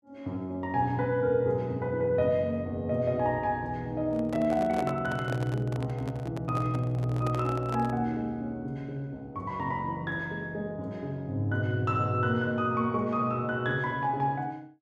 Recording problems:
handling noise; from 4 to 8 s; peak -2 dB vs average level

